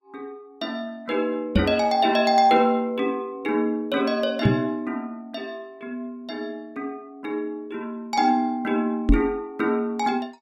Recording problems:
lossy codec; Vorbis, log-spectral distance 2 dB, nothing above 17.7 kHz
knock on the microphone; at 1.5 s, at 4.5 s and at 9 s; peak +10 dB vs average level

